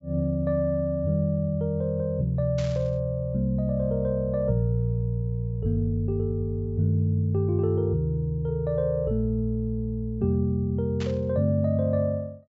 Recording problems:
treble missing; nothing above 8 kHz
static burst; at 2.5 s and at 11 s; peak -9 dB vs average level

